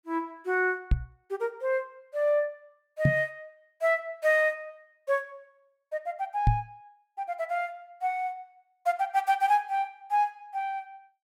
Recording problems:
microphone bump; at 1 s, at 3 s and at 6.5 s; peak +9 dB vs average level

